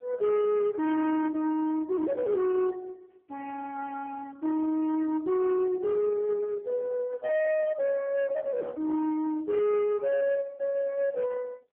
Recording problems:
phone line; 650 Hz to 2.1 kHz, AMR-NB
distortion; hard clipping, signal-to-distortion ratio 11 dB

